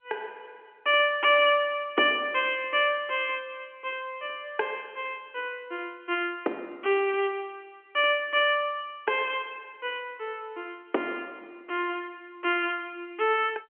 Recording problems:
telephone audio; 280 Hz to 3.3 kHz, G.711

